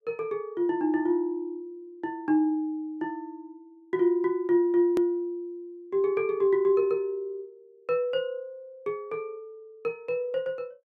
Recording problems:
edit click; at 5 s

